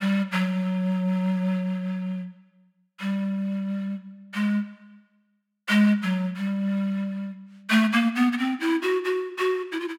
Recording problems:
none

